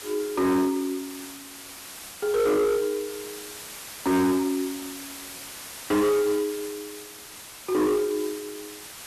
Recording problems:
distortion; hard clipping, uneven, signal-to-distortion ratio 7 dB
background hiss; slope 0 dB per octave, SNR 13 dB

